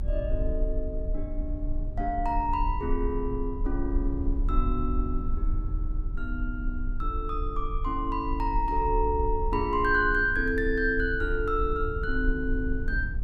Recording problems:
low-frequency rumble; below 52 Hz, strongest tone 32 Hz, SNR 4 dB

